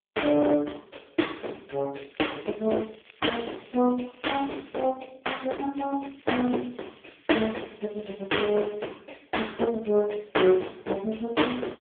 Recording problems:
telephone audio; 260 Hz to 3.4 kHz, AMR-NB
distortion; hard clipping, signal-to-distortion ratio 16 dB
crackle; from 2 to 5 s and from 6 to 9 s; loose cable, SNR 26 dB

